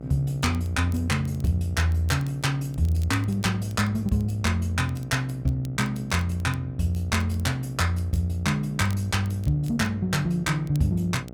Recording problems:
hum; 60 Hz, harmonics up to 840 Hz, SNR 16 dB
crackle; vinyl, SNR 27 dB

